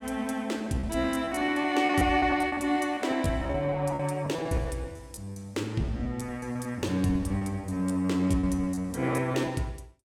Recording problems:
packet loss; 16% of the sound replaced, filled with repeated pitch periods

